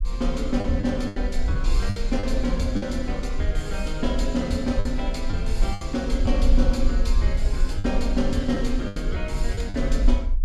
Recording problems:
rumble; below 48 Hz, SNR 1 dB
packet loss; 6% of the sound replaced, filled with the last packet

